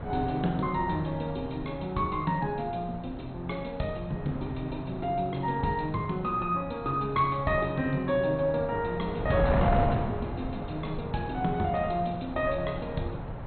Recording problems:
lossy codec; MP2, log-spectral distance 4 dB, nothing above 4.1 kHz
wind noise; below 630 Hz, SNR 7 dB

